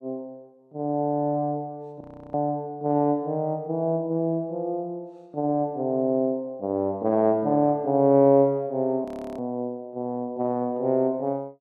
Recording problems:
audio freezing; at 2 s and at 9 s

